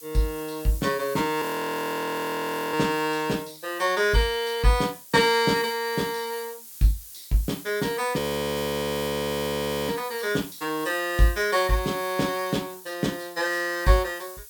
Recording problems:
hiss; SNR 15 dB
frozen audio; at 1.5 s for 1.5 s and at 8 s for 1.5 s

